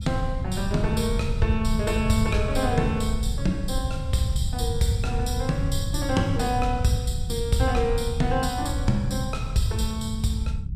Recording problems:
rumble; below 110 Hz, SNR 3 dB

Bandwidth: 14.5 kHz